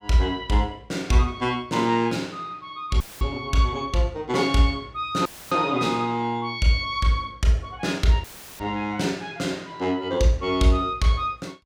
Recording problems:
audio cutting out; at 3 s, at 5.5 s and at 8 s; filled with static

